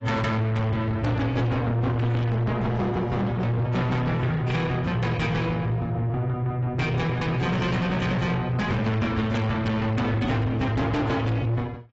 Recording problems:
lossy compression; AAC, log-spectral distance 2 dB, nothing above 7.6 kHz
distorted audio; soft clipping, signal-to-distortion ratio 7 dB

